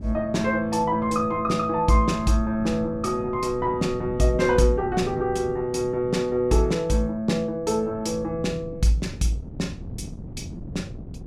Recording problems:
wind noise; below 220 Hz, SNR 15 dB

